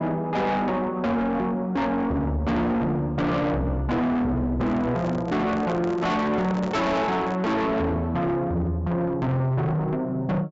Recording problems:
treble missing; nothing above 8 kHz
distorted audio; soft clipping, signal-to-distortion ratio 7 dB
microphone handling noise; from 4.5 to 7.5 s; peak -4 dB vs average level

